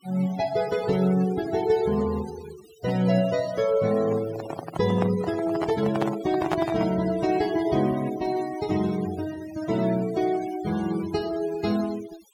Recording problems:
denoising artefacts; signal-to-artefact ratio 16 dB
microphone handling noise; from 4 to 7 s; peak +3 dB vs average level

